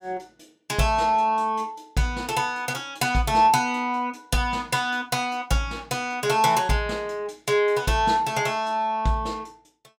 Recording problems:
none

